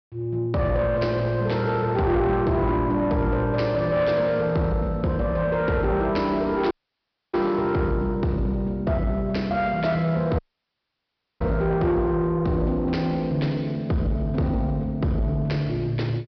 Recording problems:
low-pass filter; nothing above 5.5 kHz
distorted audio; soft clipping, signal-to-distortion ratio 12 dB
audio cutting out; at 6.5 s for 0.5 s and at 10 s for 1 s

